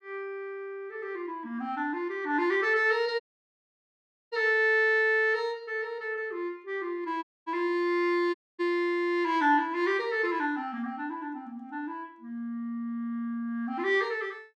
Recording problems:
dropout; at 3 s for 1 s, at 7 s and at 8.5 s

